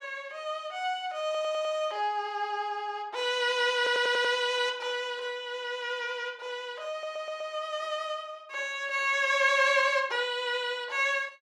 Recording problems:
stutter; at 1.5 s, at 4 s and at 7 s

